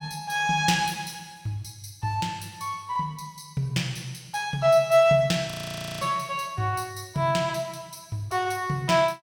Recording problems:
audio freezing; at 5.5 s for 0.5 s

